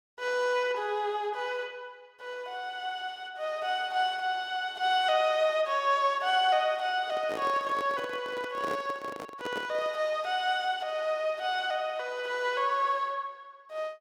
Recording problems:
microphone handling noise; from 7 to 10 s; peak -3 dB vs average level

